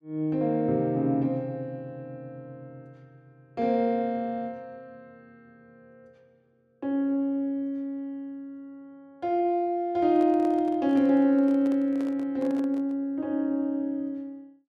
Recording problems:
handling noise; from 10 to 13 s; peak -11 dB vs average level

